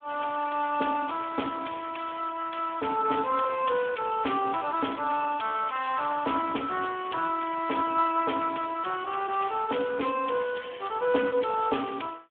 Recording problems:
phone line; 280 Hz to 3.3 kHz, Speex

